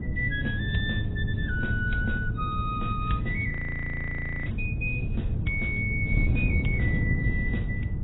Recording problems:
lossy codec; AAC, log-spectral distance 2 dB, nothing above 3.6 kHz
wind on the microphone; below 150 Hz, SNR 1 dB
audio freezing; at 3.5 s for 1 s

